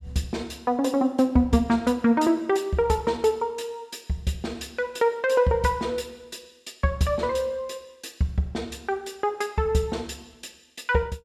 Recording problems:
none

